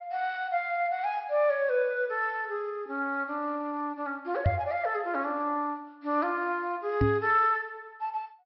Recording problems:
low-pass filter; nothing above 5.5 kHz
microphone bump; at 4.5 s and at 7 s; peak +7 dB vs average level

